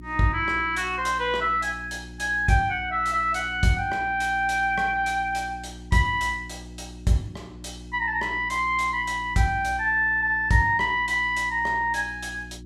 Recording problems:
hum; 60 Hz, harmonics up to 360 Hz, SNR 18 dB

